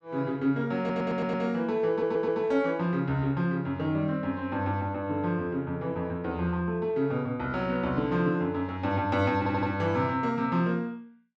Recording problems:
audio stuttering; at 1 s, at 2 s and at 9.5 s

